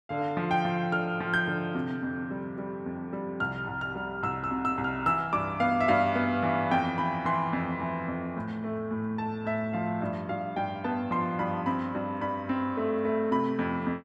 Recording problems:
none

